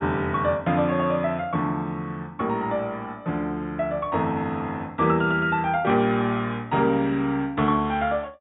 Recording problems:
treble cut off; nothing above 4 kHz

